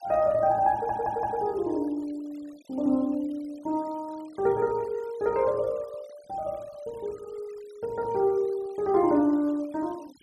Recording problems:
denoising artefacts; signal-to-artefact ratio 27 dB
audio stuttering; at 0.5 s

